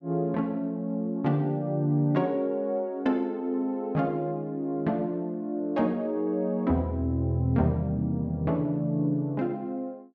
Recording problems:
none

